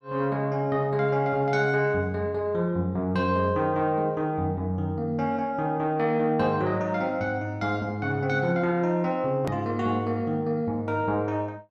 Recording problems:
click at an edit; at 9.5 s

